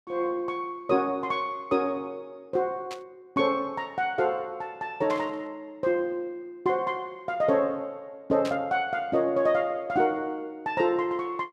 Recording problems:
static burst; at 3 s, at 5 s and at 8.5 s; peak -6 dB vs average level

